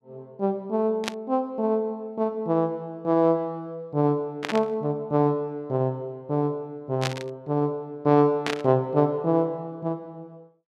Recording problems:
static burst; 4 times, first at 1 s; peak +1 dB vs average level

